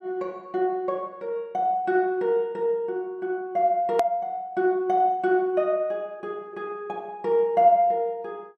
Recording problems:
edit click; at 4 s

